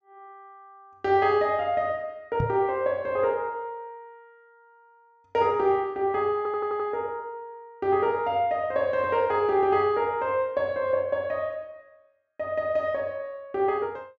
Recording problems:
treble missing; nothing above 8 kHz
knock on the microphone; at 2.5 s; peak +1 dB vs average level
stutter; at 6.5 s

